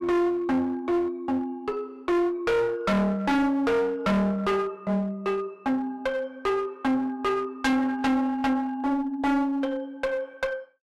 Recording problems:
distortion; hard clipping, uneven, signal-to-distortion ratio 5 dB

